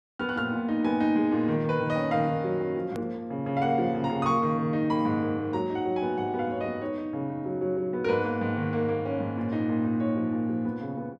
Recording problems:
edit click; at 3 s

